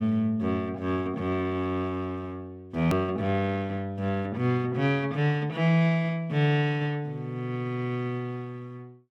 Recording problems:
edit click; at 3 s

